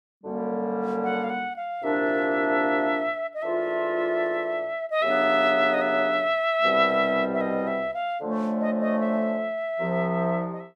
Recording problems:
none

